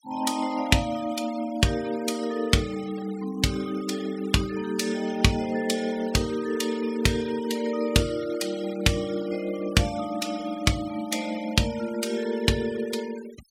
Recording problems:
noise reduction artefacts; signal-to-artefact ratio 17 dB

